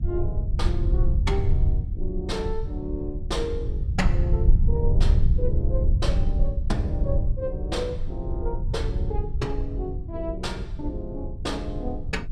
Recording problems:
rumble; below 76 Hz, SNR -5 dB

